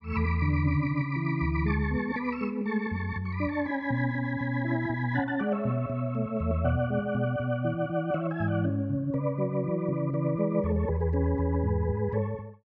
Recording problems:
none

